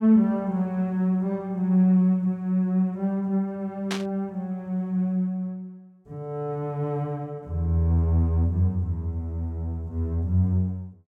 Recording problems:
burst of static; at 4 s; peak -1 dB vs average level

